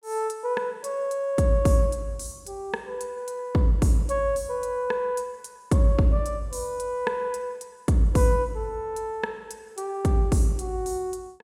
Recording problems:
none

